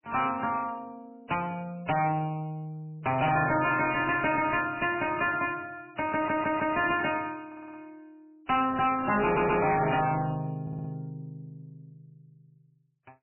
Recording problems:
lossy compression; MP3, log-spectral distance 5 dB, nothing above 2.5 kHz
distortion; hard clipping, uneven, signal-to-distortion ratio 7 dB
stutter; 4 times, first at 6 s

